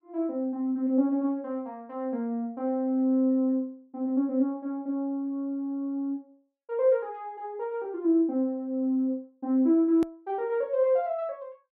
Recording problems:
edit click; at 10 s

